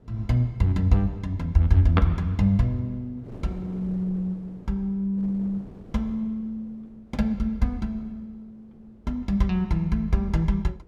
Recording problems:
wind noise; below 390 Hz, SNR 22 dB

